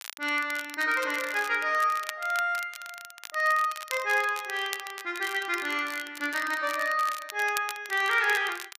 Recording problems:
crackle; vinyl, SNR 13 dB

